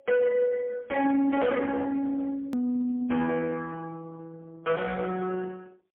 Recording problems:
telephone audio; 150 Hz to 2.3 kHz, AMR-NB, then MP3
distortion; soft clipping, signal-to-distortion ratio 12 dB
hard cut with a click; at 2.5 s

